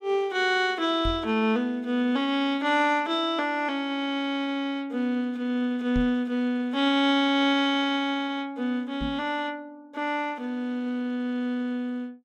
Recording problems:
microphone bump; at 1 s, at 6 s and at 9 s; peak -2 dB vs average level

